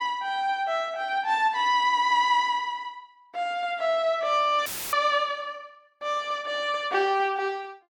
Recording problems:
audio cutting out; at 4.5 s; filled with static

